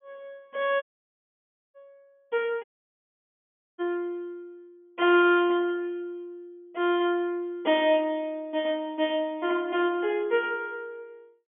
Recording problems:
low-pass filter; nothing above 3.3 kHz
dropout; at 1 s for 1 s and at 2.5 s for 1 s

